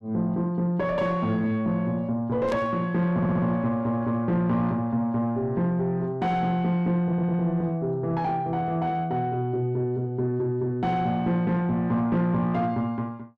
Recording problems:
distortion; soft clipping, signal-to-distortion ratio 12 dB
static burst; at 2.5 s; peak -12 dB vs average level
audio stuttering; at 3 s and at 7 s

